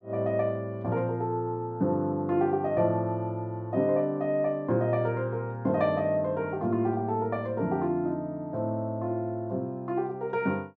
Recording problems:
none

